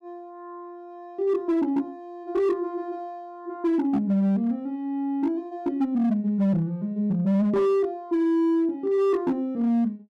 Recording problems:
distorted audio; hard clipping, signal-to-distortion ratio 12 dB

